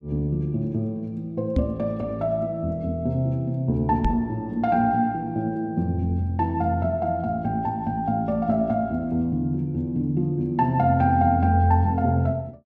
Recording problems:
knock on the microphone; at 1.5 s and at 4 s; peak +4 dB vs average level

